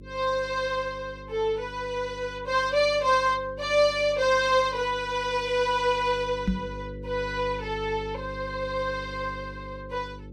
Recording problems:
hum; 50 Hz, harmonics up to 550 Hz, SNR 16 dB
microphone thump; at 6.5 s; peak +4 dB vs average level

